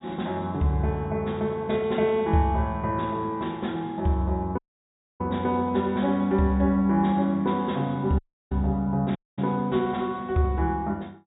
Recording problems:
low-pass filter; nothing above 4 kHz
dropout; at 4.5 s for 0.5 s, at 8 s and at 9 s

